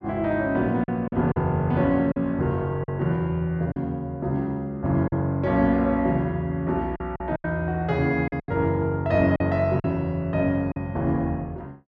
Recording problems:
lost packets; 6% of the sound replaced, filled with silence

